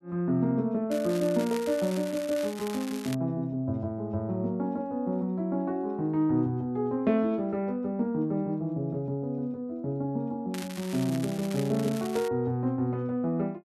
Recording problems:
crackle; from 1 to 3 s and from 11 to 12 s; loose cable, SNR 14 dB

